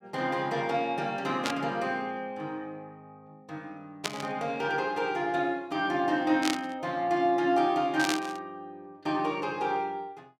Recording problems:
burst of static; 4 times, first at 1.5 s; peak +4 dB vs average level

